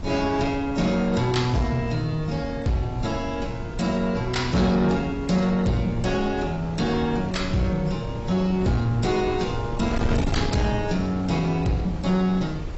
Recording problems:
lossy codec; AAC, log-spectral distance 3 dB, nothing above 7.8 kHz
distortion; soft clipping, signal-to-distortion ratio 11 dB
wind noise; below 270 Hz, SNR 9 dB

